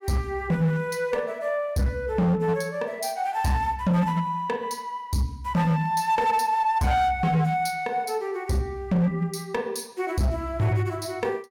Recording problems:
distorted audio; hard clipping, signal-to-distortion ratio 11 dB

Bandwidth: 17 kHz